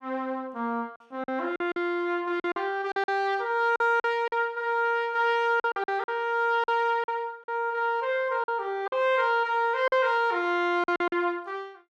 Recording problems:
lost packets; 8% of the sound replaced, filled with silence

